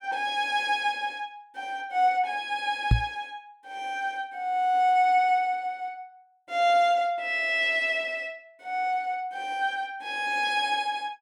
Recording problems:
microphone bump; at 3 s; peak +8 dB vs average level

